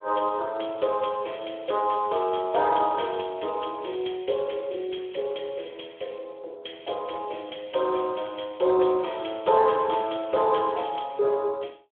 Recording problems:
telephone audio; 340 Hz to 3.5 kHz, Speex

